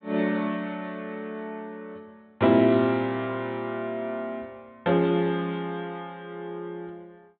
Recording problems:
low-pass filter; nothing above 4 kHz

